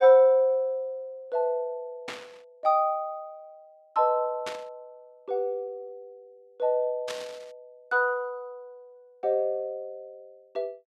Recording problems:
static burst; at 2 s, at 4.5 s and at 7 s; peak -5 dB vs average level

